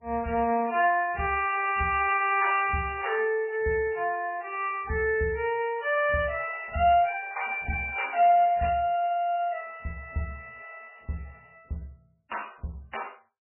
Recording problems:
codec artefacts; MP3, log-spectral distance 4 dB, nothing above 2.4 kHz

